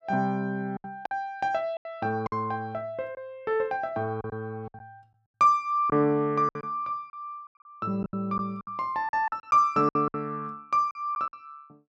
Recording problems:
packet loss; 10% of the sound replaced, filled with silence

